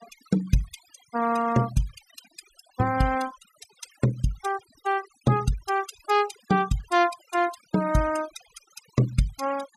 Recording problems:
noise reduction artefacts; signal-to-artefact ratio 15 dB

